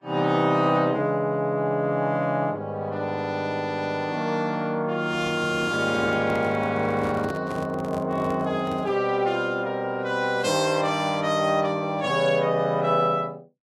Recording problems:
lossy codec; Vorbis, log-spectral distance 2 dB, nothing above 11 kHz
handling noise; from 5 to 9 s; peak -6 dB vs average level

